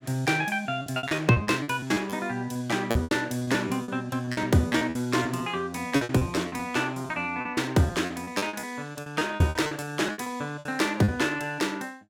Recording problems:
packet loss; 18% of the sound replaced, filled with repeated pitch periods

